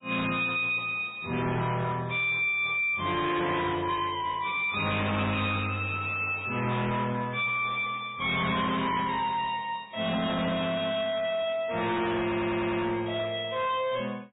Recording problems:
treble cut off; nothing above 3.3 kHz
lossy compression; MP3, log-spectral distance 5 dB
distortion; hard clipping, signal-to-distortion ratio 7 dB
audio stuttering; at 12 s

